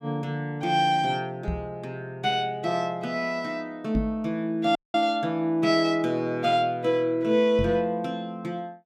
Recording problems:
knock on the microphone; at 1.5 s, at 4 s and at 7.5 s; peak +1 dB vs average level
dropout; at 5 s

